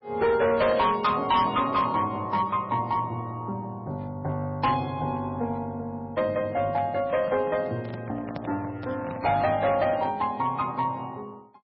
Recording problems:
lossy codec; MP3, log-spectral distance 2 dB, nothing above 4.8 kHz
distorted audio; hard clipping, uneven, signal-to-distortion ratio 12 dB
handling noise; from 7 to 10 s; peak -5 dB vs average level

